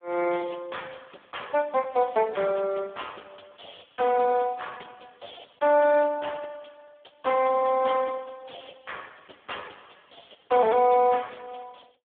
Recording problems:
phone line; 130 Hz to 3.6 kHz, Speex

